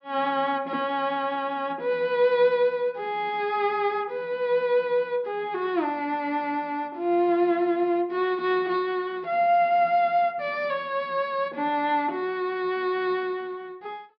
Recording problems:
treble cut off; nothing above 5.5 kHz

